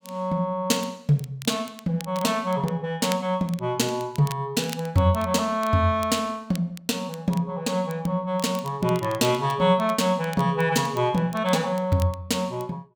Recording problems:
crackle; vinyl, SNR 20 dB

